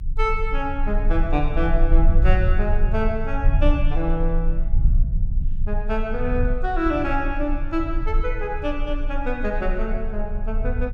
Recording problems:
rumble; below 46 Hz, strongest tone 28 Hz, SNR -1 dB

